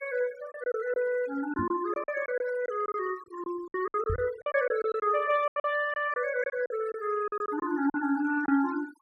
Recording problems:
noise reduction artefacts; signal-to-artefact ratio 16 dB
packet loss; 12% of the sound replaced, filled with silence
knock on the microphone; at 1.5 s and at 4 s; peak -1 dB vs average level

